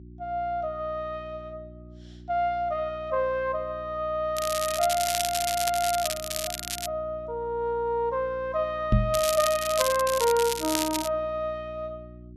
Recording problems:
hum; 60 Hz, harmonics up to 360 Hz, SNR 18 dB
crackling; from 4.5 to 7 s and from 9 to 11 s; loose cable, SNR 3 dB
microphone thump; at 9 s; peak +8 dB vs average level

